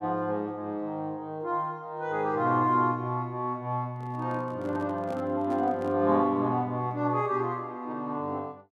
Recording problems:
handling noise; from 4 to 6 s; peak -10 dB vs average level

